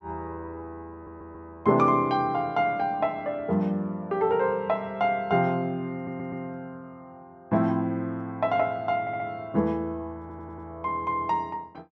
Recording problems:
audio stuttering; 4 times, first at 1 s

